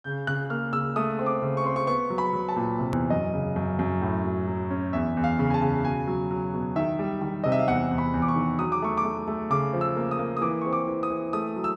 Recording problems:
hard cut with a click; at 3 s

